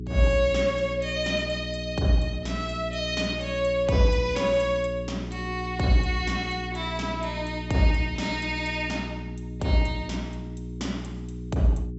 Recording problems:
low-pass filter; nothing above 7.8 kHz
electrical hum; 60 Hz, harmonics up to 420 Hz, SNR 9 dB

